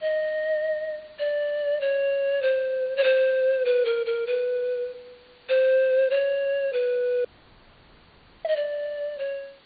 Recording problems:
low-pass filter; nothing above 4.6 kHz
hiss; SNR 29 dB
dropout; at 7.5 s for 1 s

